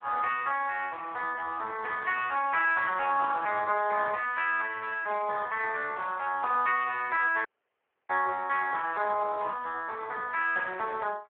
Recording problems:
telephone audio; 340 Hz to 3.2 kHz, Speex
dropout; at 7.5 s for 0.5 s

